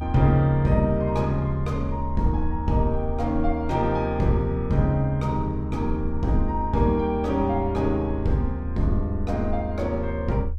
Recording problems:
rumble; below 76 Hz, SNR 7 dB

